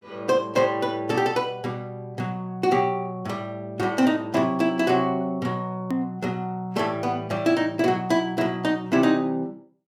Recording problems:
click at an edit; at 6 s

